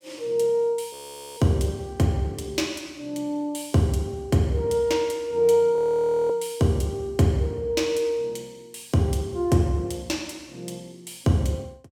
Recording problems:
audio freezing; at 1 s and at 6 s for 0.5 s

